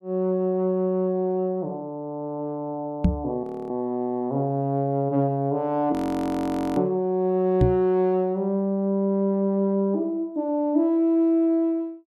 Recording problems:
microphone thump; at 3 s and at 7.5 s; peak +7 dB vs average level
audio freezing; at 3.5 s and at 6 s for 1 s

